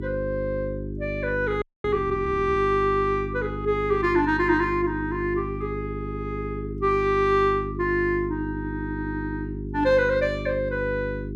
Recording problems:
hum; 50 Hz, harmonics up to 400 Hz, SNR 8 dB
frozen audio; at 1.5 s

